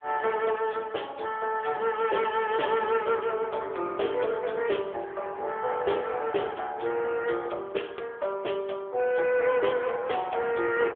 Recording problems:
telephone audio; 300 Hz to 3.5 kHz, AMR-NB

